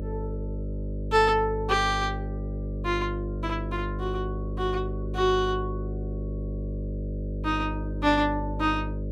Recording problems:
hum; 50 Hz, harmonics up to 600 Hz, SNR 5 dB

